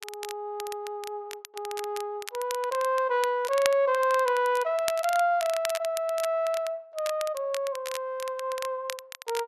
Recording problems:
crackling; vinyl, SNR 12 dB

